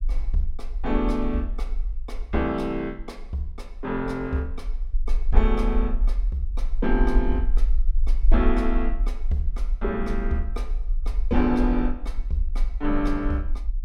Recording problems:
rumble; below 42 Hz, strongest tone 18 Hz, SNR 1 dB

